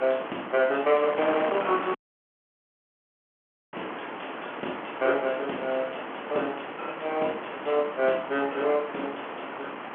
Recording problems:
telephone audio; 220 Hz to 3.3 kHz, G.711
wind on the microphone; below 1.7 kHz, SNR 8 dB
dropout; at 2 s for 2 s

